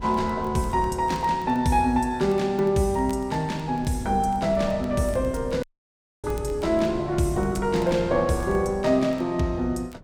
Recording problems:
wind on the microphone; below 200 Hz, SNR 16 dB
crackling; vinyl, SNR 30 dB
dropout; at 5.5 s for 0.5 s

